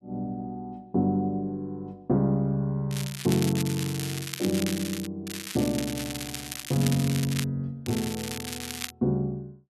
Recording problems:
crackling; from 3 to 5 s, from 5.5 to 7.5 s and from 8 to 9 s; loose cable, SNR 7 dB

